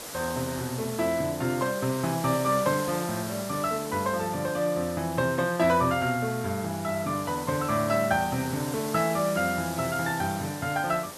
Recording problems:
hiss; SNR 11 dB

